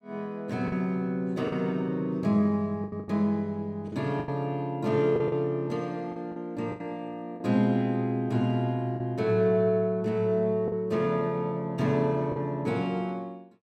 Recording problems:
packet loss; 6% of the sound replaced, filled with the last packet

